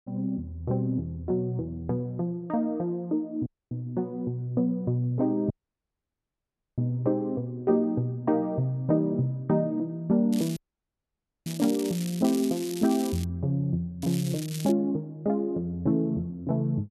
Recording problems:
audio cutting out; at 3.5 s, at 5.5 s for 1.5 s and at 11 s for 1 s
crackle; from 10 to 13 s and at 14 s; loose cable, SNR 13 dB

